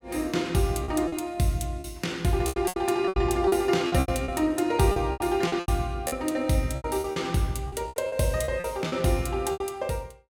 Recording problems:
packet loss; 13% of the sound replaced, filled with repeated pitch periods

